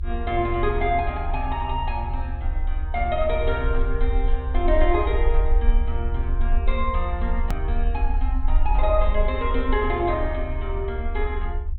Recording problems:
treble missing; nothing above 4.1 kHz
rumble; below 56 Hz, strongest tone 28 Hz, SNR 0 dB
edit click; at 7.5 s

